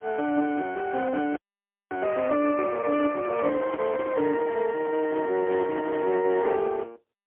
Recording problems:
phone line; 260 Hz to 2.9 kHz, AMR-NB, then MP3
audio freezing; at 1.5 s for 0.5 s
microphone handling noise; from 3 to 6.5 s; peak -7 dB vs average level

